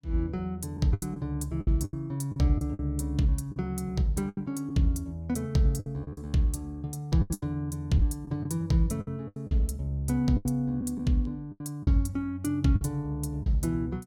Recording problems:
packet loss; 9% of the sound replaced, filled with the last packet

